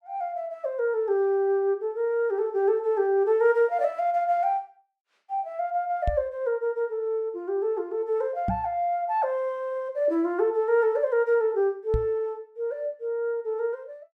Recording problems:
knock on the microphone; at 6 s, at 8.5 s and at 12 s; peak +2 dB vs average level

